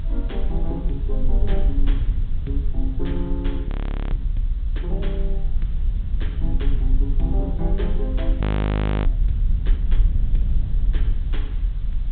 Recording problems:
treble cut off; nothing above 4 kHz
hiss; SNR 21 dB
low-frequency rumble; below 52 Hz, SNR -9 dB
audio freezing; at 3.5 s and at 8.5 s for 0.5 s

